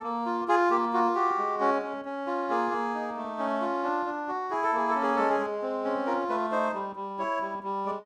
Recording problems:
none

